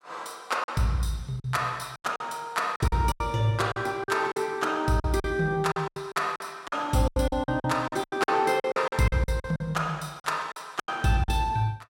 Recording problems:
lost packets; 14% of the sound replaced, filled with silence

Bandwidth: 16.5 kHz